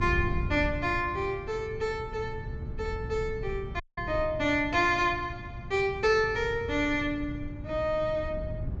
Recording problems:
treble missing; nothing above 8 kHz
mains hum; 60 Hz, harmonics up to 1.4 kHz, SNR 20 dB
wind noise; below 130 Hz, SNR 10 dB
dropout; at 4 s

